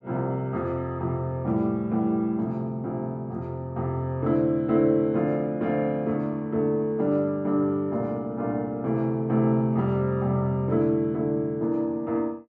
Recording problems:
none

